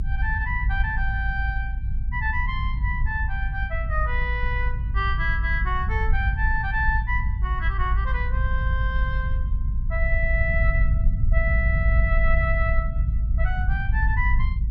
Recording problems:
low-frequency rumble; below 68 Hz, SNR -3 dB

